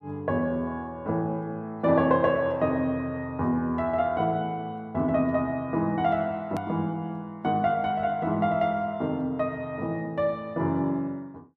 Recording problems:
edit click; at 6.5 s

